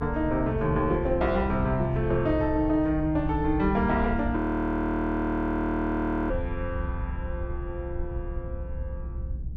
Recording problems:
rumble; below 84 Hz, SNR 8 dB
audio freezing; at 4.5 s for 2 s

